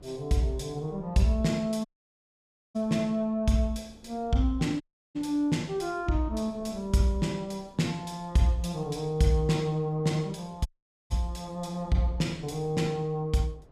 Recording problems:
wind noise; below 390 Hz, SNR 24 dB
audio cutting out; at 2 s for 1 s, at 5 s and at 11 s

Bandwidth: 15 kHz